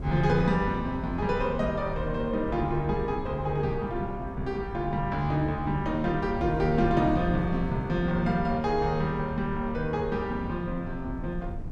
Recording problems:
wind on the microphone; below 120 Hz, SNR 10 dB

